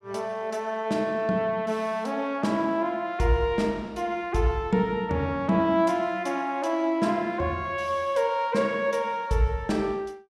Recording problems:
none

